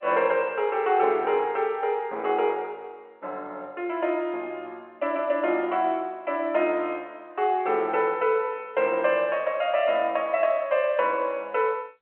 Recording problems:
telephone audio; 300 Hz to 3.2 kHz, G.711

